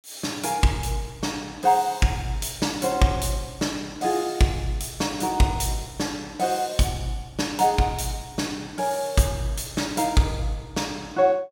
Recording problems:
none

